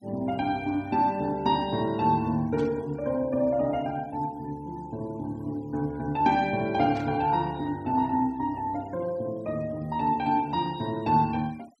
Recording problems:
denoising artefacts; signal-to-artefact ratio 27 dB
static burst; at 2.5 s and at 7 s; peak -14 dB vs average level

